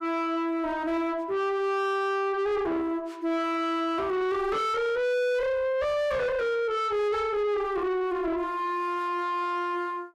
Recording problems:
distorted audio; soft clipping, signal-to-distortion ratio 6 dB

